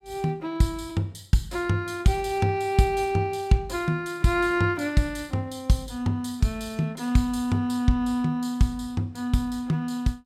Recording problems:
none

